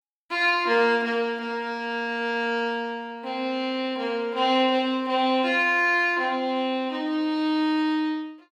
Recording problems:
none

